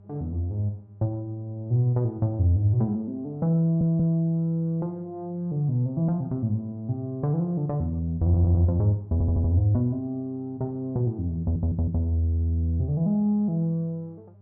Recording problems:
hum; 50 Hz, harmonics up to 800 Hz, SNR 27 dB
audio stuttering; 4 times, first at 3.5 s

